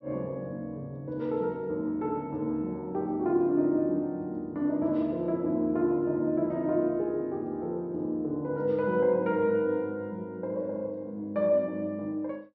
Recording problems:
low-pass filter; nothing above 5.8 kHz

